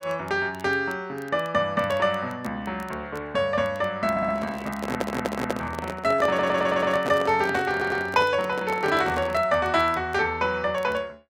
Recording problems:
crackling; vinyl, SNR 28 dB
microphone handling noise; from 4 to 9.5 s; peak +1 dB vs average level
audio stuttering; 4 times, first at 4 s

